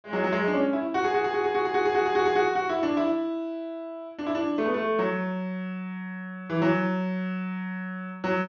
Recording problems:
treble cut off; nothing above 6.7 kHz

